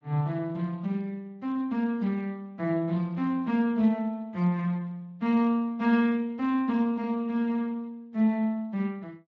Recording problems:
lossy codec; Speex, then Speex, log-spectral distance 2 dB, nothing above 16 kHz

